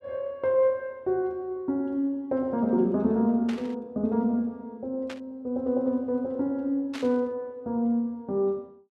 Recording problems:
static burst; at 3.5 s, at 5 s and at 7 s; peak -7 dB vs average level

